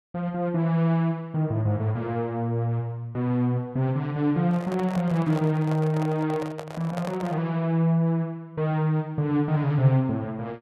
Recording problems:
handling noise; from 4.5 to 7.5 s; peak -5 dB vs average level

